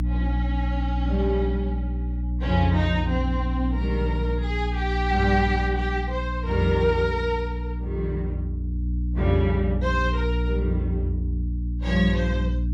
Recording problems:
hum; 60 Hz, harmonics up to 300 Hz, SNR 1 dB

